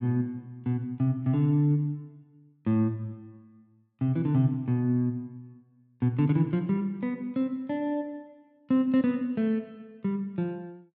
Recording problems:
none

